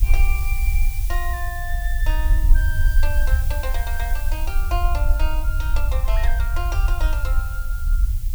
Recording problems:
background hiss; SNR 7 dB
rumble; below 54 Hz, strongest tone 22 Hz, SNR -8 dB

